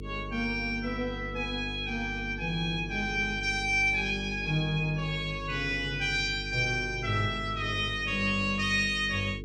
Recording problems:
hum; 50 Hz, harmonics up to 450 Hz, SNR 11 dB

